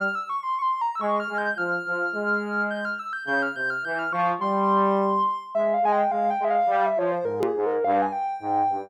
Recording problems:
hard cut with a click; at 7.5 s

